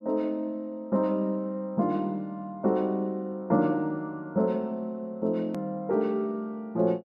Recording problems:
hard cut with a click; at 5.5 s

